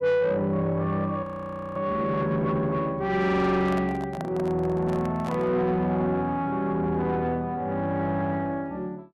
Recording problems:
distorted audio; soft clipping, signal-to-distortion ratio 12 dB
audio freezing; at 1 s for 0.5 s
handling noise; from 3.5 to 5.5 s; peak -5 dB vs average level

